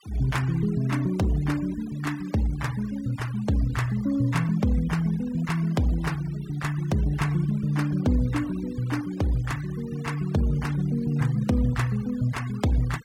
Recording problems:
denoising artefacts; signal-to-artefact ratio 20 dB

